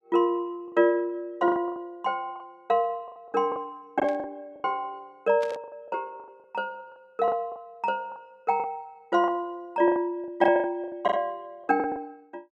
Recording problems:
lost packets; 14% of the sound replaced, filled with the last packet
static burst; at 4 s and at 5.5 s; peak -10 dB vs average level

